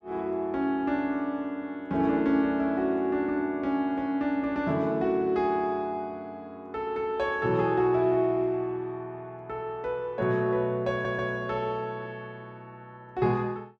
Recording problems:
audio stuttering; at 11 s

